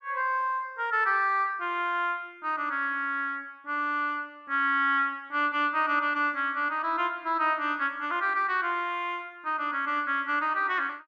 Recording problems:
none

